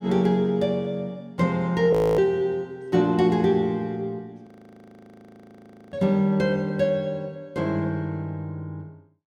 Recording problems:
audio freezing; at 2 s and at 4.5 s for 1.5 s

